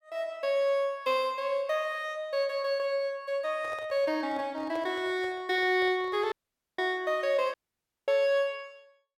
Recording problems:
handling noise; from 3.5 to 6.5 s; peak -9 dB vs average level
dropout; at 6.5 s and at 7.5 s for 0.5 s

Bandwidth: 17 kHz